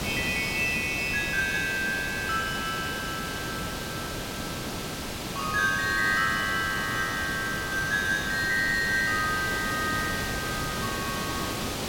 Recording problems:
hiss; slope -3 dB per octave, SNR 5 dB

